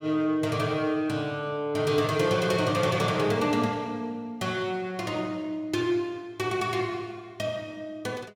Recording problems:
none

